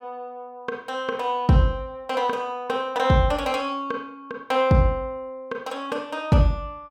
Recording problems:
none

